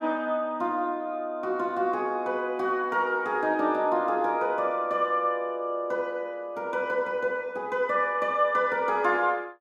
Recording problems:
none

